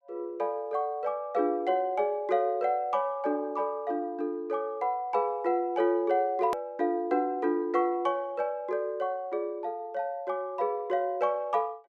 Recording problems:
edit click; at 6.5 s

